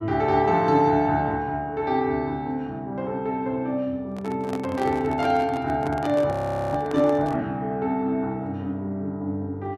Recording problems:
handling noise; from 4 to 7.5 s; peak -5 dB vs average level
audio freezing; at 6.5 s

